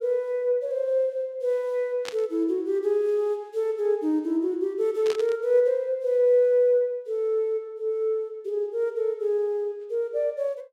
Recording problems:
static burst; at 2 s and at 5 s; peak -5 dB vs average level

